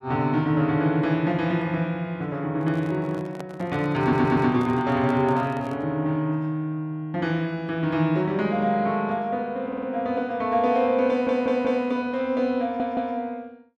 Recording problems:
handling noise; from 2.5 to 6 s; peak -9 dB vs average level
audio stuttering; 4 times, first at 4 s

